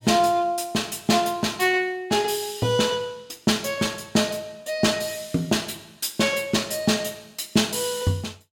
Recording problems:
none

